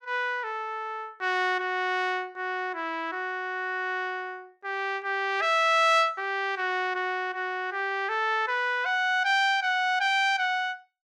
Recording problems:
none

